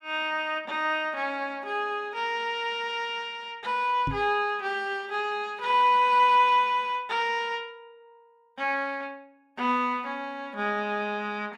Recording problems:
microphone thump; at 4 s; peak -2 dB vs average level

